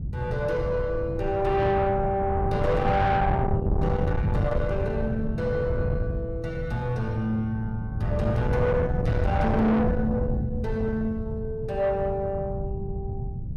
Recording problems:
distorted audio; soft clipping, signal-to-distortion ratio 8 dB
wind noise; below 190 Hz, SNR 3 dB

